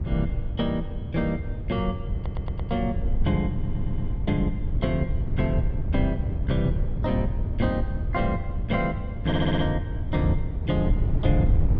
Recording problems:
wind noise; below 110 Hz, SNR 0 dB
audio stuttering; at 2 s, at 3.5 s and at 9.5 s

